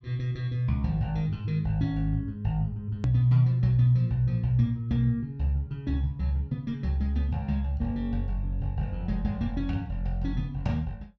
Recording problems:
low-pass filter; nothing above 8 kHz
hard cut with a click; at 3 s

